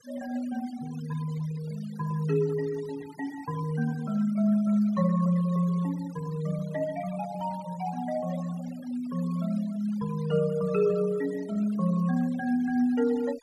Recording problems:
noise reduction artefacts; signal-to-artefact ratio 20 dB

